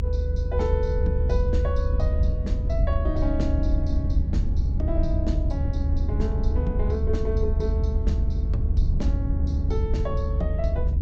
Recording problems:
treble cut off; nothing above 8 kHz
rumble; below 76 Hz, SNR -7 dB

